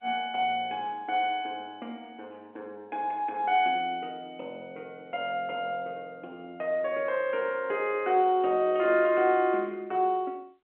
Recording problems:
phone line; 260 Hz to 3.4 kHz, G.711

